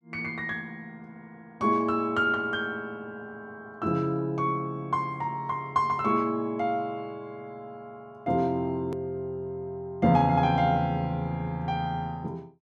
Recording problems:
click at an edit; at 9 s

